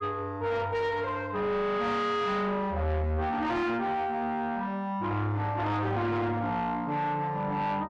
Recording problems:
distortion; soft clipping, signal-to-distortion ratio 8 dB

